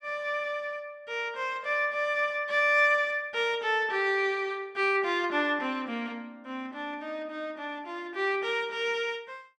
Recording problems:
none

